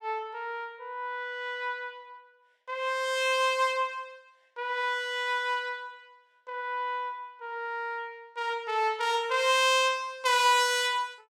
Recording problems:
none

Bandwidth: 16.5 kHz